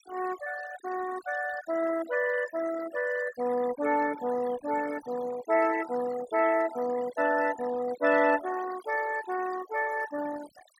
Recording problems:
noise reduction artefacts; signal-to-artefact ratio 14 dB

